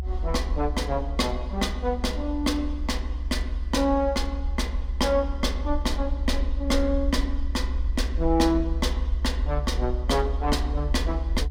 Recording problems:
rumble; below 66 Hz, SNR 2 dB

